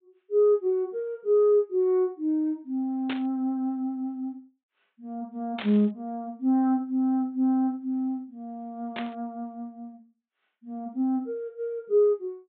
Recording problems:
low-pass filter; nothing above 4 kHz
burst of static; at 3 s, at 5.5 s and at 9 s; peak -4 dB vs average level

